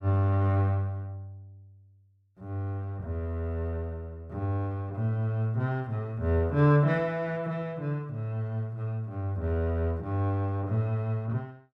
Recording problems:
none

